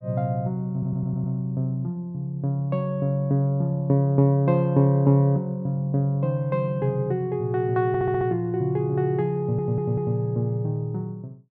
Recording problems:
audio stuttering; at 0.5 s, at 8 s and at 9.5 s

